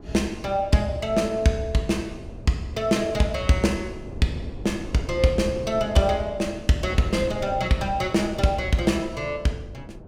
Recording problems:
wind on the microphone; below 290 Hz, SNR 14 dB

